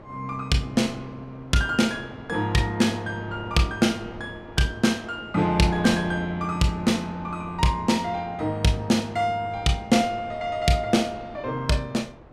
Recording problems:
wind noise; below 690 Hz, SNR 20 dB

